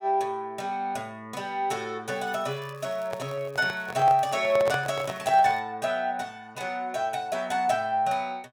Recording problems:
crackling; from 2 to 4.5 s and at 5 s; loose cable, SNR 28 dB
microphone handling noise; from 3 to 5.5 s; peak -2 dB vs average level

